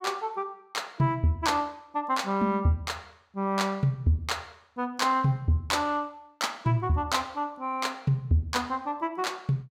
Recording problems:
none

